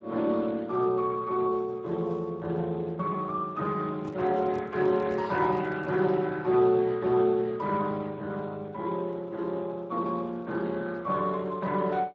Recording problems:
lossy compression; Speex, log-spectral distance 3 dB
handling noise; from 4 to 6 s; peak -12 dB vs average level

